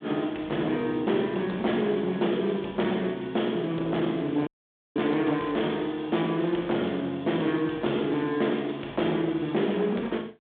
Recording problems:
telephone audio; 240 Hz to 3.7 kHz, G.726
distorted audio; hard clipping, signal-to-distortion ratio 12 dB
dropout; at 4.5 s

